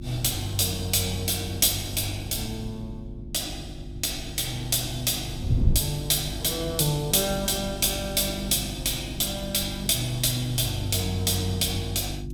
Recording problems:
mains hum; 50 Hz, harmonics up to 350 Hz, SNR 13 dB
wind noise; below 120 Hz, SNR 12 dB

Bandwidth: 17 kHz